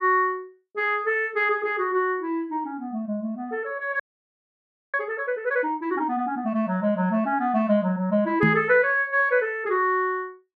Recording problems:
frozen audio; at 4 s for 1 s
microphone bump; at 8.5 s; peak +6 dB vs average level

